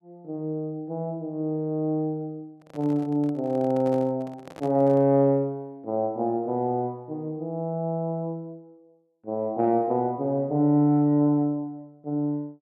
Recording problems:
handling noise; from 2.5 to 5 s; peak -12 dB vs average level

